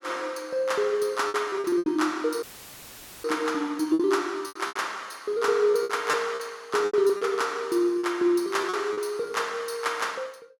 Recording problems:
lost packets; 9% of the sound replaced, filled with repeated pitch periods
dropout; at 2.5 s for 1 s; filled with static

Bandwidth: 17.5 kHz